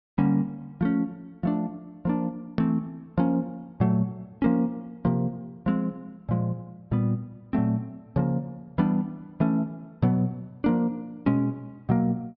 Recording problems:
treble cut off; nothing above 5.6 kHz
edit click; at 2.5 s

